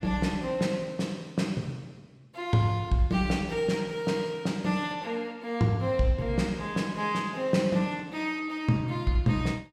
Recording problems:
none

